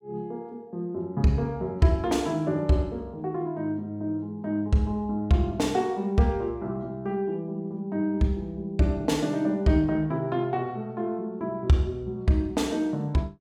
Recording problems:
none

